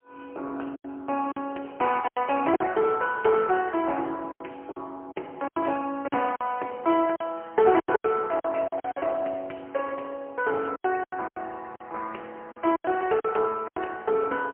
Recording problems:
phone line; 280 Hz to 3.1 kHz, AMR-NB, then MP3
packet loss; 10% of the sound replaced, filled with silence

